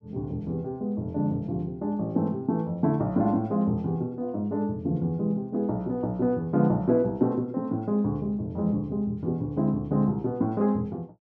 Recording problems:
none

